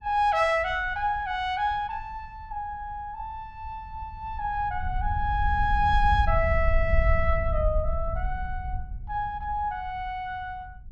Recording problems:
wind noise; below 68 Hz, SNR 3 dB

